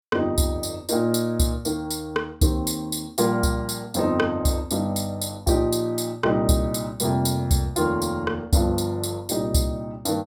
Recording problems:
none

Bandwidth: 17 kHz